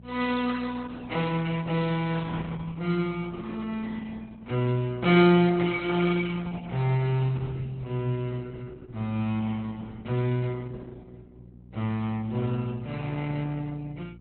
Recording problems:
codec artefacts; Opus, log-spectral distance 3 dB, nothing above 4 kHz
hum; 60 Hz, harmonics up to 540 Hz, SNR 20 dB

